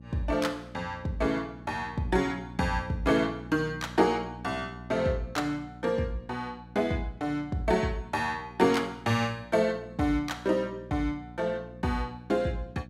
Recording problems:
hum; 60 Hz, harmonics up to 600 Hz, SNR 16 dB

